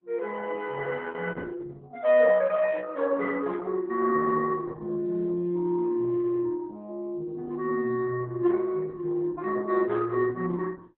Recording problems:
lossy compression; Opus, log-spectral distance 3 dB

